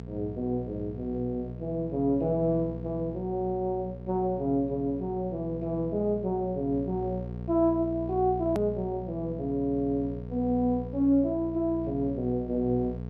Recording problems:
treble cut off; nothing above 7.9 kHz
electrical hum; 60 Hz, harmonics up to 900 Hz, SNR 10 dB
edit click; at 8.5 s

